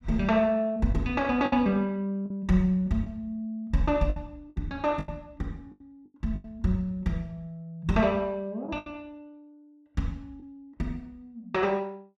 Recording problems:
lost packets; 5% of the sound replaced, filled with the last packet

